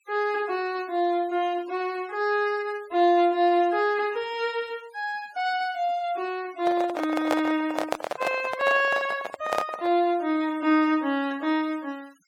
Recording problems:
noise reduction artefacts; signal-to-artefact ratio 25 dB
handling noise; from 6.5 to 10 s; peak +3 dB vs average level

